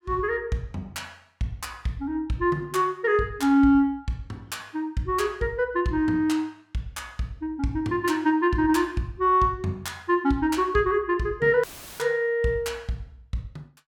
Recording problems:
audio cutting out; at 12 s; filled with static

